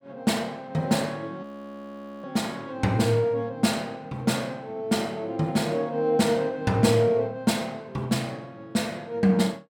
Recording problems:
audio freezing; at 1.5 s for 1 s

